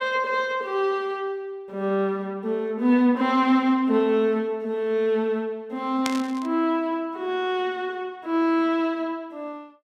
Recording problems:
burst of static; at 6 s; peak 0 dB vs average level

